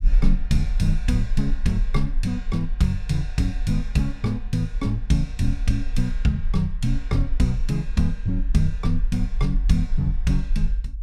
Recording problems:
rumble; below 40 Hz, strongest tone 24 Hz, SNR 4 dB

